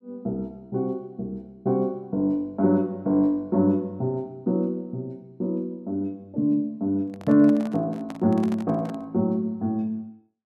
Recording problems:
handling noise; from 7 to 9 s; peak -9 dB vs average level

